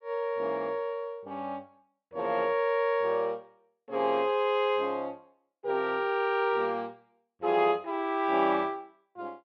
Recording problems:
none

